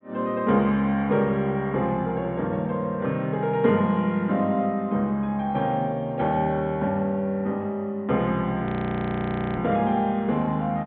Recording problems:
treble missing; nothing above 4 kHz
audio freezing; at 8.5 s for 1 s

